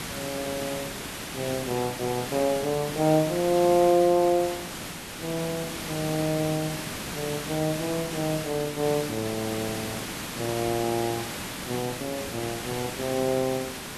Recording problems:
background hiss; slope -2 dB per octave, SNR 6 dB

